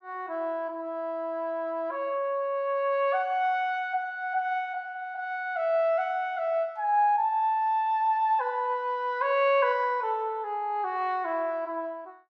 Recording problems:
none

